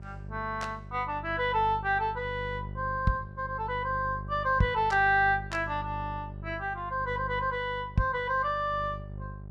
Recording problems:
hum; 50 Hz, harmonics up to 600 Hz, SNR 12 dB

